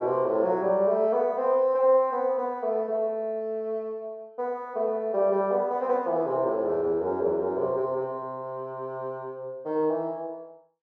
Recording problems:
none

